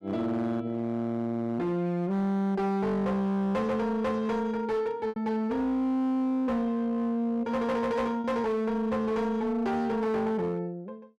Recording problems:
distortion; hard clipping, signal-to-distortion ratio 11 dB
packet loss; 1.1% of the sound replaced, filled with repeated pitch periods

